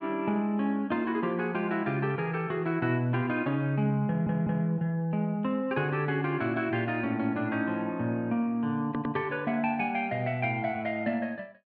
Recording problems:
audio stuttering; at 4 s and at 9 s

